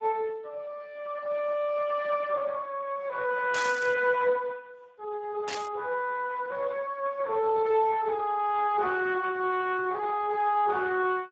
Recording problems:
codec artefacts; Speex, log-spectral distance 3 dB
burst of static; at 3.5 s and at 5.5 s; peak -2 dB vs average level

